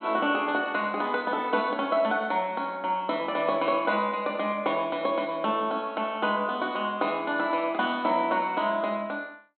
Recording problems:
treble missing; nothing above 4 kHz

